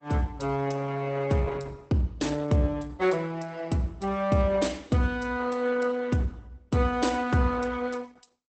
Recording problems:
lossy compression; Opus, log-spectral distance 4 dB, nothing above 8.2 kHz

